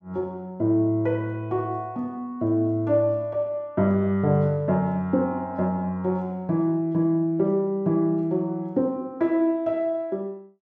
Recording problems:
none

